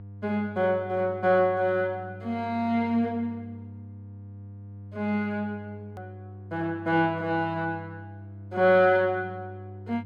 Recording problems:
hum; 50 Hz, harmonics up to 500 Hz, SNR 17 dB
edit click; at 6 s

